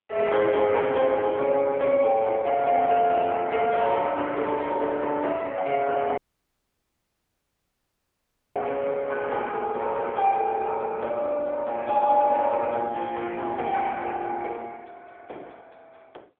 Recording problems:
phone line; 300 Hz to 3.4 kHz, AMR-NB
dropout; at 6 s for 2.5 s

